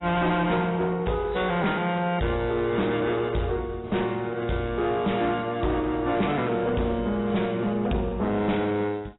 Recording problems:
codec artefacts; AAC, log-spectral distance 4 dB, nothing above 3.9 kHz
distortion; hard clipping, uneven, signal-to-distortion ratio 9 dB

